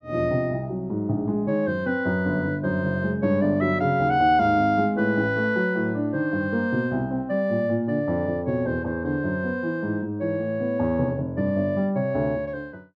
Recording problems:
none

